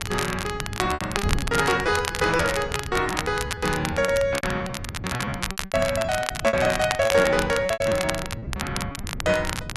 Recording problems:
wind noise; below 170 Hz, SNR 11 dB
crackle; vinyl, SNR 7 dB
packet loss; 17% of the sound replaced, filled with repeated pitch periods

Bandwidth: 12 kHz